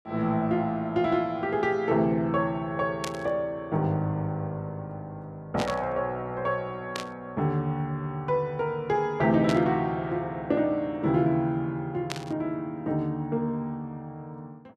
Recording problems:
burst of static; 5 times, first at 3 s; peak -1 dB vs average level

